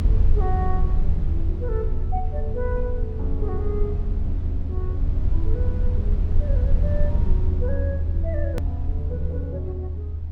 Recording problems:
low-frequency rumble; below 80 Hz, SNR -8 dB
edit click; at 8.5 s

